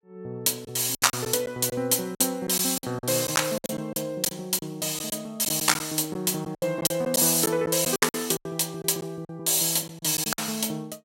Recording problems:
packet loss; 11% of the sound replaced, filled with silence

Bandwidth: 16 kHz